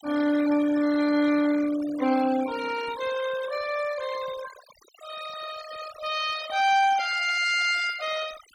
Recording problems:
denoising artefacts; signal-to-artefact ratio 14 dB

